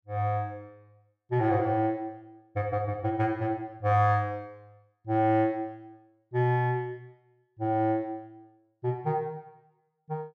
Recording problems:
none

